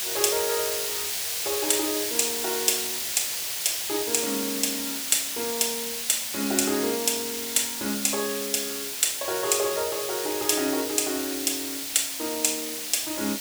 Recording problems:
hiss; SNR 2 dB

